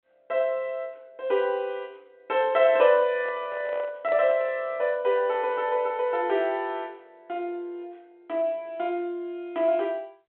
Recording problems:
telephone audio; 240 Hz to 3.5 kHz, G.726
microphone handling noise; from 3 to 4.5 s; peak -11 dB vs average level

